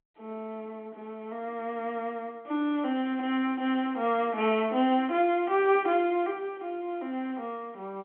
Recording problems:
telephone audio; 260 Hz to 3.3 kHz, G.711

